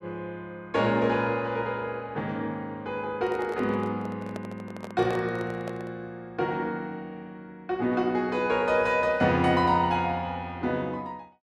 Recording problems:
handling noise; from 3 to 6 s; peak -6 dB vs average level

